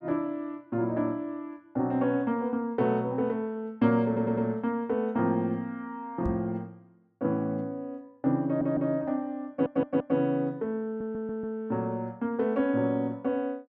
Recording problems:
stutter; 4 times, first at 4 s
knock on the microphone; at 6.5 s; peak -1 dB vs average level

